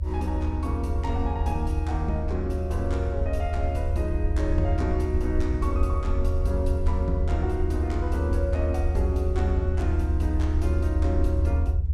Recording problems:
hum; 50 Hz, harmonics up to 550 Hz, SNR 18 dB
low-frequency rumble; below 78 Hz, strongest tone 76 Hz, SNR -4 dB

